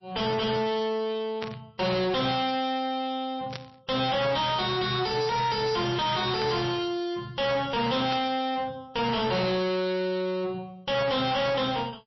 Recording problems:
lossy compression; MP3, log-spectral distance 5 dB, nothing above 5.3 kHz
distorted audio; soft clipping, signal-to-distortion ratio 5 dB
burst of static; 4 times, first at 1.5 s; peak -5 dB vs average level

